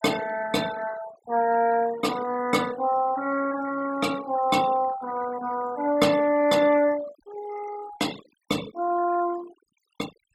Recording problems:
denoising artefacts; signal-to-artefact ratio 17 dB

